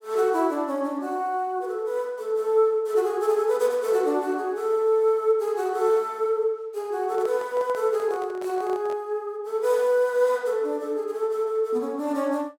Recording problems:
handling noise; from 7 to 9 s; peak -11 dB vs average level

